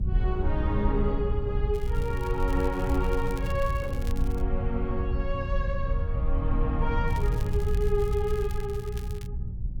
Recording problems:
hum; 60 Hz, harmonics up to 420 Hz, SNR 7 dB
wind noise; below 72 Hz, SNR -1 dB
crackle; from 1.5 to 4.5 s and from 7 to 9.5 s; loose cable, SNR 18 dB

